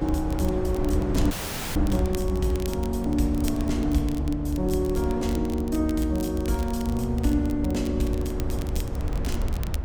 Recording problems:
rumble; below 96 Hz, SNR 3 dB
crackle; vinyl, SNR 17 dB
audio cutting out; at 1.5 s

